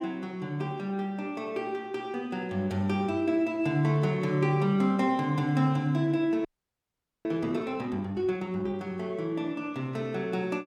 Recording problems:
frozen audio; at 6.5 s for 1 s

